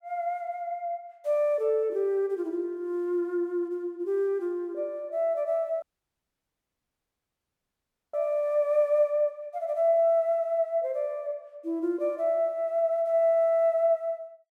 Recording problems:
dropout; at 6 s for 2.5 s

